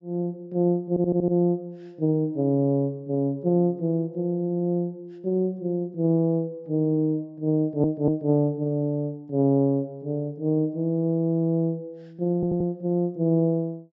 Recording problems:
treble cut off; nothing above 8 kHz
audio stuttering; at 1 s, at 7.5 s and at 12 s

